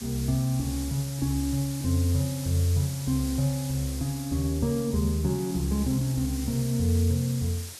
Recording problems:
hiss; slope +1 dB per octave, SNR 12 dB

